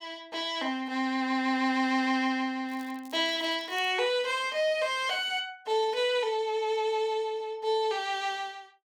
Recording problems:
crackling; from 2.5 to 4 s; loose cable, SNR 26 dB

